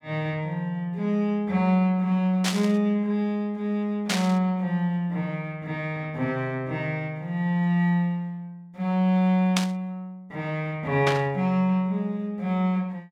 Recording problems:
burst of static; 4 times, first at 2.5 s; peak +4 dB vs average level

